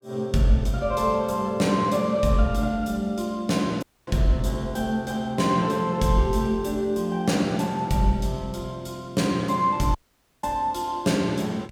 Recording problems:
audio cutting out; at 4 s and at 10 s

